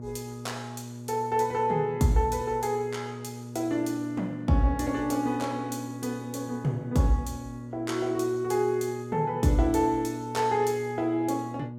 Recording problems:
hum; 60 Hz, harmonics up to 840 Hz, SNR 12 dB

